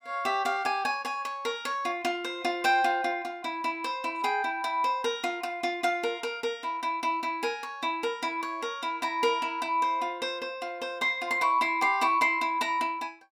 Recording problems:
none

